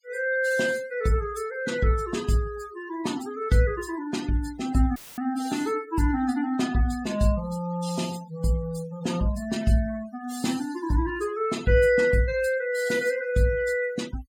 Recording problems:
denoising artefacts; signal-to-artefact ratio 18 dB
dropout; at 5 s; filled with static

